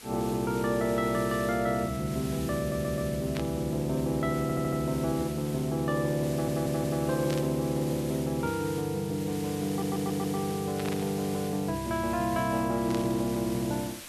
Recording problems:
hiss; slope 0 dB per octave, SNR 13 dB
audio stuttering; 4 times, first at 2.5 s
static burst; 4 times, first at 3.5 s; peak -5 dB vs average level

